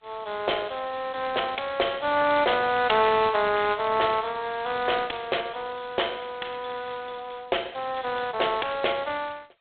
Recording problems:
phone line; 320 Hz to 3.6 kHz, G.726

